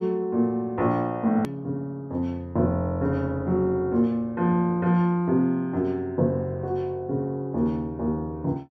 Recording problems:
hard cut with a click; at 1.5 s

